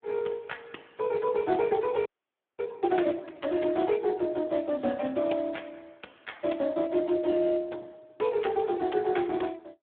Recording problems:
telephone audio; 170 Hz to 3.6 kHz, Speex
audio freezing; at 2 s for 0.5 s

